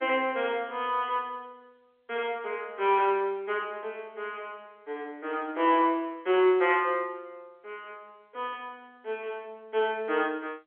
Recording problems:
telephone audio; 280 Hz to 3.4 kHz, G.711

